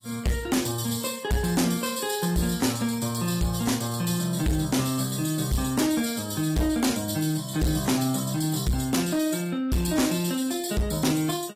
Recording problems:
codec artefacts; AAC, log-spectral distance 5 dB, nothing above 14.7 kHz
distortion; soft clipping, signal-to-distortion ratio 7 dB

